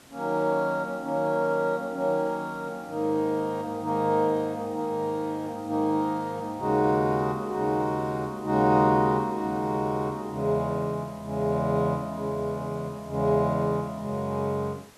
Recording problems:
background hiss; slope -3 dB per octave, SNR 25 dB

